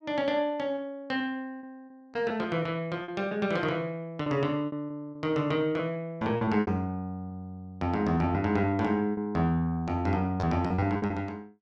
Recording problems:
packet loss; 9% of the sound replaced, filled with repeated pitch periods

